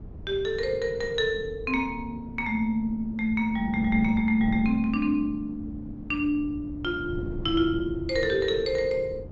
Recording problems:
treble missing; nothing above 7.6 kHz
wind on the microphone; below 200 Hz, SNR 12 dB

